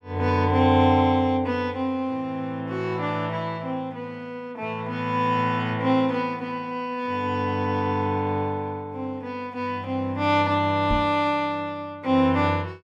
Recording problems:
microphone bump; at 11 s; peak -2 dB vs average level

